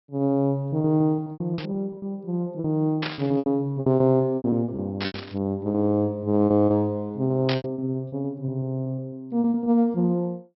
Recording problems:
low-pass filter; nothing above 5.5 kHz
lost packets; 14% of the sound replaced, filled with repeated pitch periods
static burst; 4 times, first at 1.5 s; peak 0 dB vs average level

